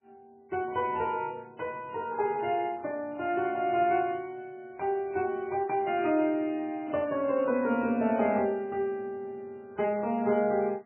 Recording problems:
lossy codec; MP3, log-spectral distance 2 dB, nothing above 2.5 kHz

